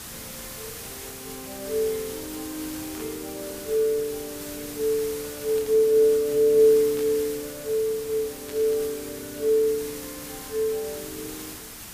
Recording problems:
hiss; slope -1 dB per octave, SNR 12 dB
static burst; 4 times, first at 3 s; peak -14 dB vs average level

